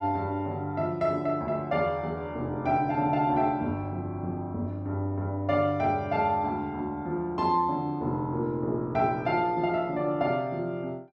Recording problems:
none

